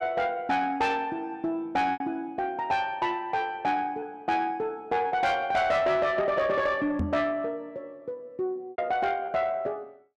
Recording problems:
distorted audio; soft clipping, signal-to-distortion ratio 11 dB
lost packets; 2% of the sound replaced, filled with repeated pitch periods
microphone thump; at 7 s; peak +3 dB vs average level

